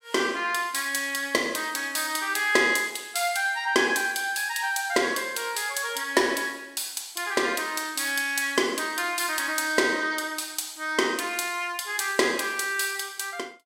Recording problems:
none

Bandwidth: 16 kHz